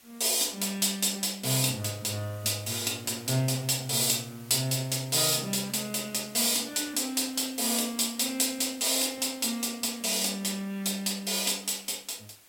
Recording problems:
background hiss; slope 0 dB per octave, SNR 24 dB

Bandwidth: 16.5 kHz